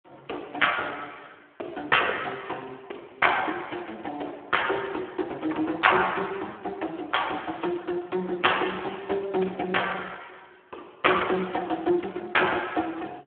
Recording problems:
phone line; 280 Hz to 3.4 kHz, Speex

